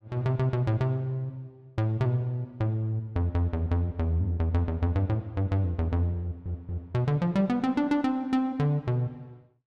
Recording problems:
audio stuttering; at 6 s

